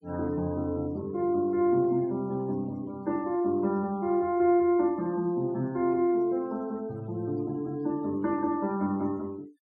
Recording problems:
denoising artefacts; signal-to-artefact ratio 28 dB

